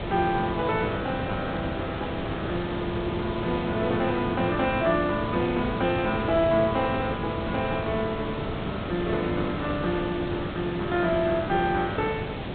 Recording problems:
low-pass filter; nothing above 4 kHz
hiss; SNR 5 dB

